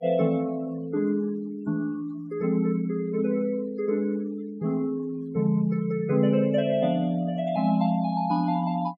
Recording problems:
noise reduction artefacts; signal-to-artefact ratio 25 dB

